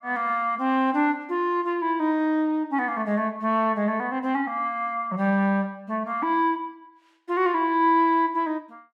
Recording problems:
none

